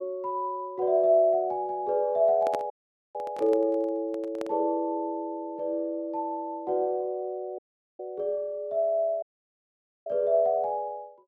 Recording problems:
handling noise; from 2.5 to 4.5 s; peak -3 dB vs average level
audio cutting out; at 2.5 s, at 7.5 s and at 9 s for 1 s

